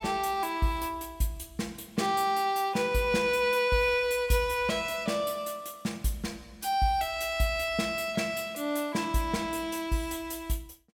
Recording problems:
none

